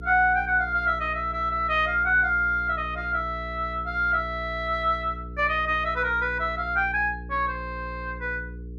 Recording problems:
hum; 60 Hz, harmonics up to 480 Hz, SNR 14 dB

